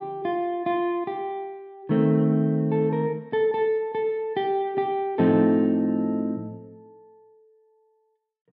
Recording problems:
none

